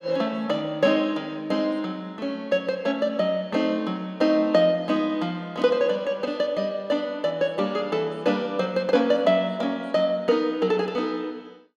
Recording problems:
none

